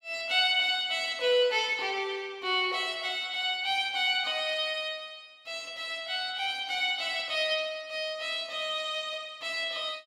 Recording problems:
none

